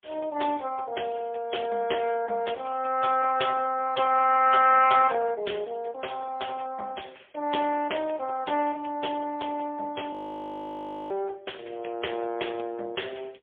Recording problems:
phone line; 320 Hz to 3.4 kHz, AMR-NB, then MP3
frozen audio; at 10 s for 1 s

